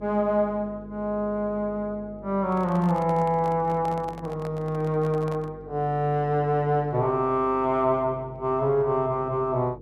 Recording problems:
hum; 50 Hz, harmonics up to 500 Hz, SNR 20 dB
microphone handling noise; from 2.5 to 5.5 s; peak -11 dB vs average level

